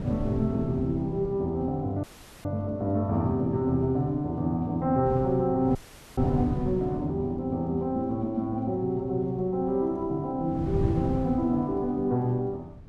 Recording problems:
wind on the microphone; below 170 Hz, SNR 10 dB
audio cutting out; at 2 s and at 6 s

